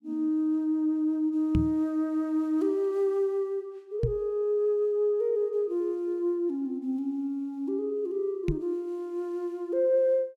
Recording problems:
knock on the microphone; at 1.5 s, at 4 s and at 8.5 s; peak +4 dB vs average level

